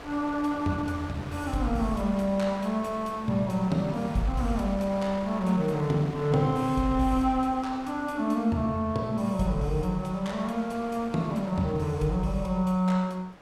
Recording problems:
wind on the microphone; below 1.6 kHz, SNR 16 dB

